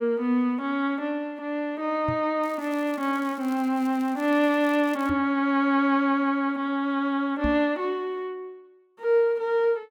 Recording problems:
microphone thump; at 2 s, at 5 s and at 7.5 s; peak -1 dB vs average level
crackling; from 2.5 to 5 s; loose cable, SNR 25 dB

